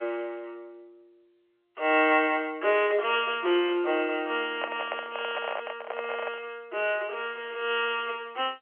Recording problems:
telephone audio; 320 Hz to 3.3 kHz, G.711
microphone handling noise; from 4.5 to 6.5 s; peak -1 dB vs average level

